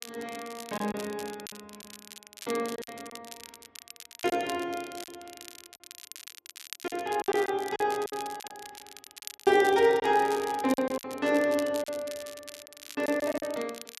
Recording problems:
crackle; vinyl, SNR 15 dB
lost packets; 9% of the sound replaced, filled with silence

